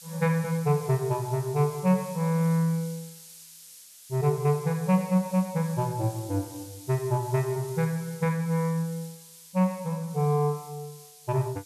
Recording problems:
hiss; SNR 18 dB

